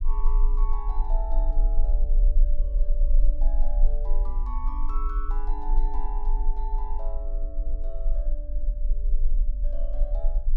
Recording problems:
low-frequency rumble; below 36 Hz, strongest tone 20 Hz, SNR -13 dB

